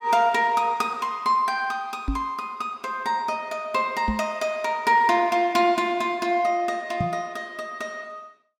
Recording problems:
microphone thump; at 2 s, at 4 s and at 7 s; peak +1 dB vs average level

